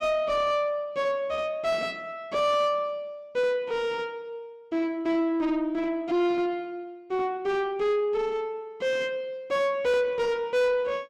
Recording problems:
distortion; soft clipping, signal-to-distortion ratio 9 dB

